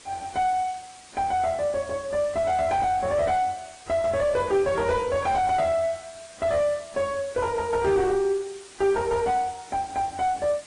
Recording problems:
codec artefacts; MP3, then AAC, log-spectral distance 6 dB, nothing above 9 kHz
distorted audio; soft clipping, signal-to-distortion ratio 9 dB
background hiss; slope 0 dB per octave, SNR 20 dB

